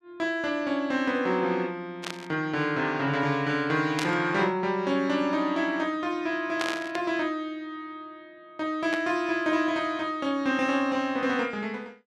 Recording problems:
burst of static; 4 times, first at 2 s; peak 0 dB vs average level

